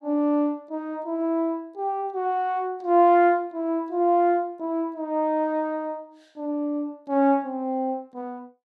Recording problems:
none

